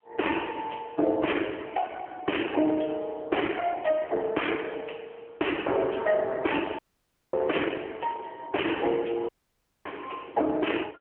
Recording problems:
telephone audio; 260 Hz to 3.2 kHz, AMR-NB
distorted audio; hard clipping, signal-to-distortion ratio 7 dB
dropout; at 7 s for 0.5 s and at 9.5 s for 0.5 s

